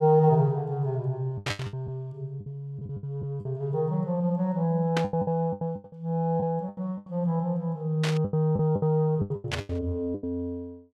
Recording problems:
packet loss; 14% of the sound replaced, filled with the last packet
burst of static; 4 times, first at 1.5 s; peak +2 dB vs average level

